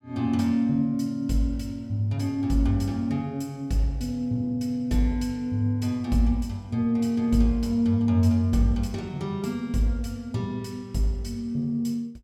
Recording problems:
none

